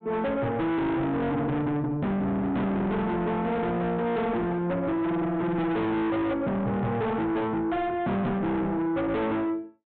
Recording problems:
treble cut off; nothing above 4 kHz
distortion; soft clipping, signal-to-distortion ratio 6 dB

